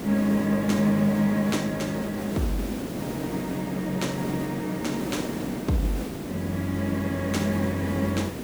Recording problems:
electrical hum; 50 Hz, harmonics up to 500 Hz, SNR 25 dB
hiss; SNR 6 dB

